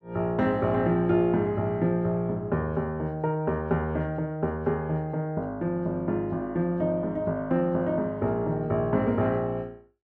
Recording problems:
none

